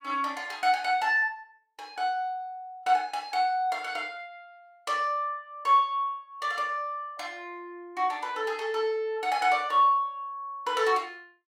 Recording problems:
none

